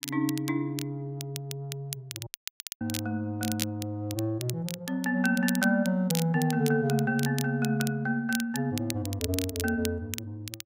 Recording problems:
crackle; vinyl, SNR 9 dB
dropout; at 2.5 s for 0.5 s

